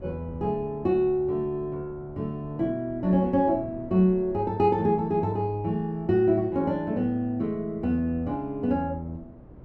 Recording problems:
wind noise; below 330 Hz, SNR 21 dB

